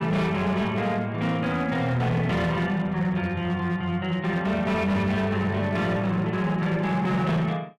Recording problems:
distortion; hard clipping, signal-to-distortion ratio 11 dB

